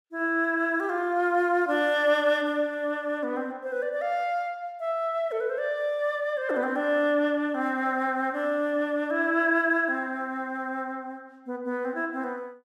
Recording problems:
none

